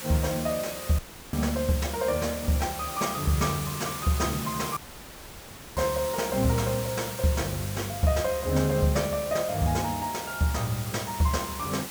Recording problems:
hiss; slope -1 dB per octave, SNR 8 dB
dropout; at 1 s and at 5 s for 1 s
crackling; from 1.5 to 2.5 s; loose cable, SNR 24 dB

